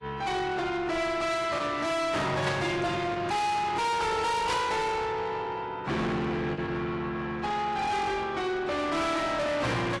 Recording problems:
lossy codec; AAC, log-spectral distance 3 dB, nothing above 11.3 kHz
distortion; soft clipping, signal-to-distortion ratio 6 dB
packet loss; 1% of the sound replaced, filled with the last packet
static burst; at 2.5 s and at 4.5 s; peak -1 dB vs average level

